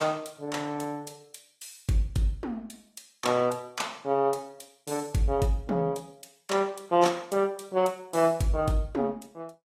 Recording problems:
lossy codec; AAC, log-spectral distance 3 dB

